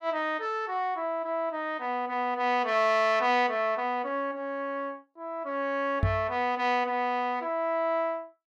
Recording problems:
microphone thump; at 6 s; peak +5 dB vs average level

